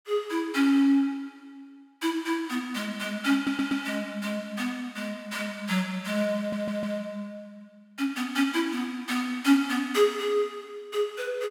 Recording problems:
stutter; at 3.5 s and at 6.5 s

